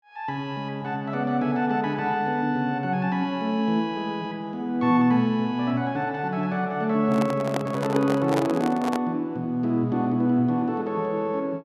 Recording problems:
microphone handling noise; from 7 to 9 s; peak +1 dB vs average level

